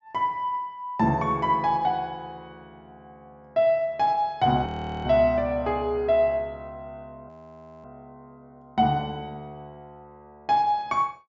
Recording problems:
treble missing; nothing above 8 kHz
frozen audio; at 4.5 s and at 7.5 s for 0.5 s

